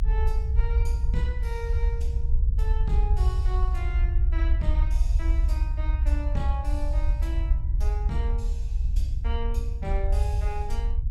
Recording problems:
low-frequency rumble; below 64 Hz, SNR -10 dB

